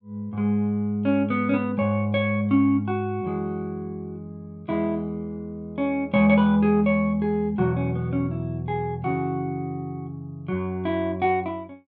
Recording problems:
none

